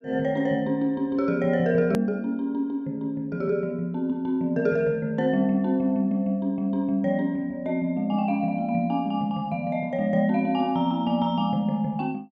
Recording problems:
edit click; at 2 s

